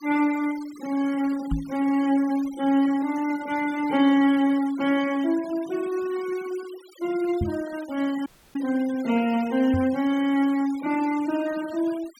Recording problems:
noise reduction artefacts; signal-to-artefact ratio 20 dB
knock on the microphone; at 1.5 s, at 7.5 s and at 9.5 s; peak +1 dB vs average level
dropout; at 8.5 s

